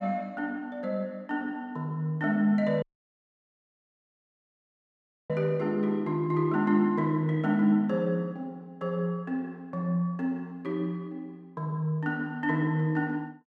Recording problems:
audio cutting out; at 3 s for 2.5 s

